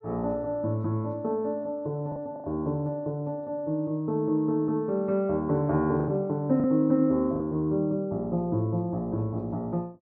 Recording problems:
packet loss; 3% of the sound replaced, filled with the last packet

